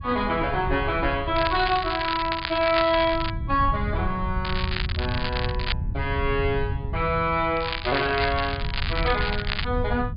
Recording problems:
treble cut off; nothing above 5 kHz
wind noise; below 110 Hz, SNR 7 dB
crackling; from 1.5 to 3.5 s, from 4.5 to 5.5 s and from 7.5 to 9.5 s; loose cable, SNR 6 dB

